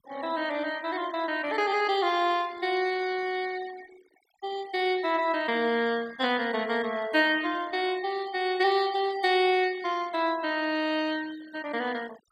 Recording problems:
noise reduction artefacts; signal-to-artefact ratio 20 dB

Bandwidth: 16.5 kHz